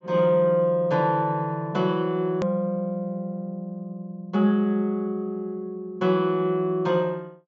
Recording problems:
treble missing; nothing above 7.4 kHz
click at an edit; at 2.5 s

